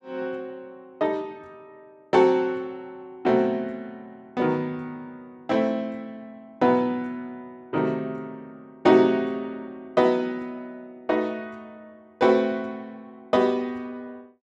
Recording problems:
none

